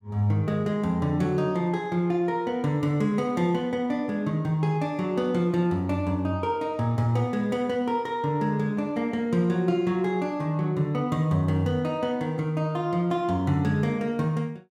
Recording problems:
none

